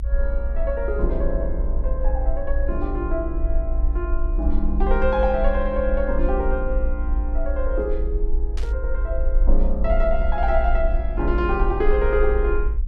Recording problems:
low-frequency rumble; below 54 Hz, strongest tone 22 Hz, SNR -1 dB
static burst; at 8.5 s; peak -9 dB vs average level

